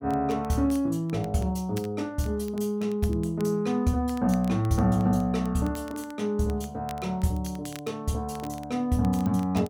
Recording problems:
crackling; vinyl, SNR 24 dB

